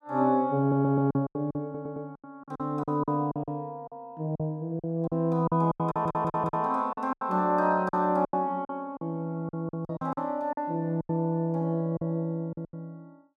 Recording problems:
packet loss; 14% of the sound replaced, filled with silence
audio stuttering; at 0.5 s, at 1.5 s and at 6 s

